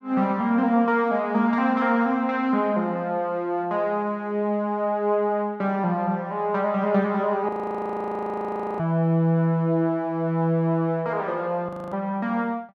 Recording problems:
audio freezing; at 7.5 s for 1.5 s and at 12 s

